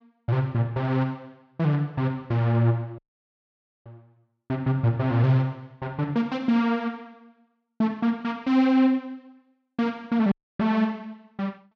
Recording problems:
audio cutting out; at 3 s for 1 s and at 10 s

